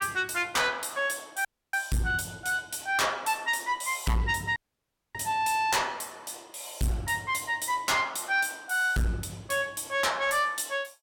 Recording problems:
distortion; soft clipping, signal-to-distortion ratio 8 dB
dropout; at 1.5 s and at 4.5 s for 0.5 s

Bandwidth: 17 kHz